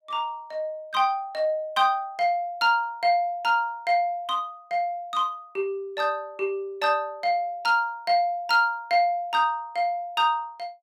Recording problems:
none

